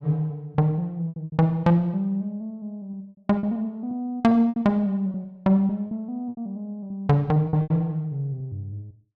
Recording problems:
lost packets; 9% of the sound replaced, filled with repeated pitch periods

